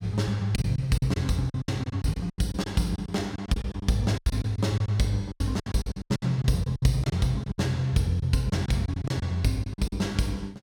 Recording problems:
packet loss; 15% of the sound replaced, filled with silence

